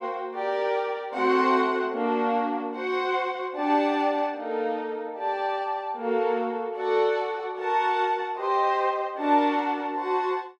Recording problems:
none

